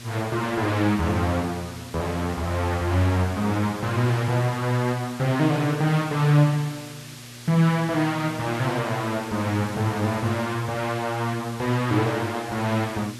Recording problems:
electrical hum; 60 Hz, harmonics up to 600 Hz, SNR 17 dB
hiss; slope 0 dB per octave, SNR 17 dB

